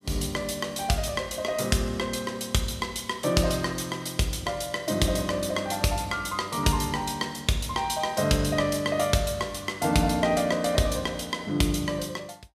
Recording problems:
none

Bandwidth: 15 kHz